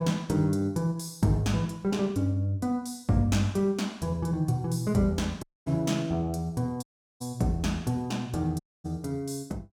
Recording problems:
audio cutting out; at 5.5 s, at 7 s and at 8.5 s

